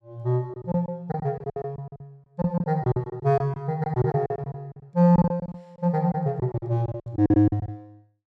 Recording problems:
lost packets; 18% of the sound replaced, filled with silence

